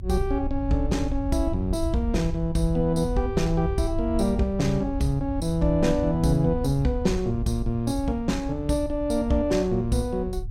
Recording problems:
low-frequency rumble; below 82 Hz, SNR 8 dB

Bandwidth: 16 kHz